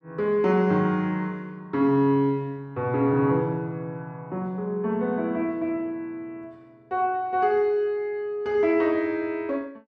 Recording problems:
none

